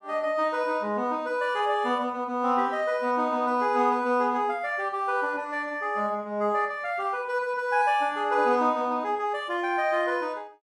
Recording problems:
none

